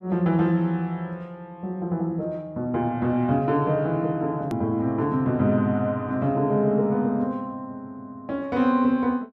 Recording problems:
edit click; at 4.5 s

